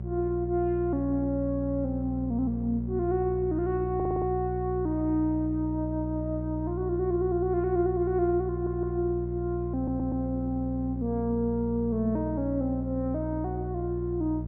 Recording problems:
hum; 60 Hz, harmonics up to 600 Hz, SNR 6 dB
audio stuttering; at 4 s, at 8.5 s and at 10 s

